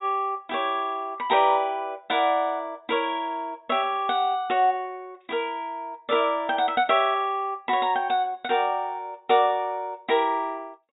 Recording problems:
low-pass filter; nothing above 4 kHz

